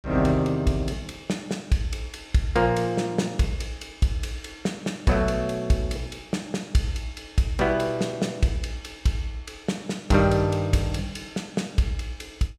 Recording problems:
none

